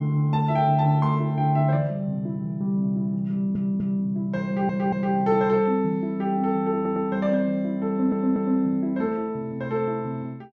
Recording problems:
stutter; 4 times, first at 3.5 s

